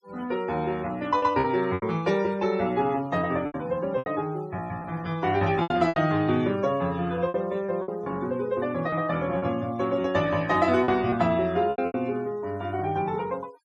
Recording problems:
noise reduction artefacts; signal-to-artefact ratio 24 dB
packet loss; 7% of the sound replaced, filled with repeated pitch periods

